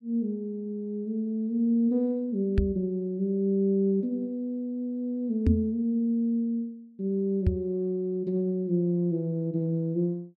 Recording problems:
microphone bump; at 2.5 s, at 5.5 s and at 7.5 s; peak +9 dB vs average level

